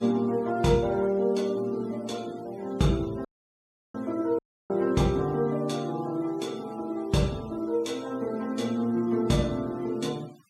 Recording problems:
noise reduction artefacts; signal-to-artefact ratio 24 dB
audio cutting out; at 3.5 s for 0.5 s and at 4.5 s

